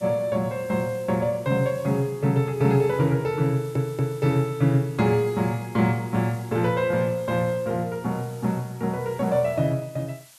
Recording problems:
hiss; slope +3 dB per octave, SNR 25 dB
audio stuttering; at 3.5 s

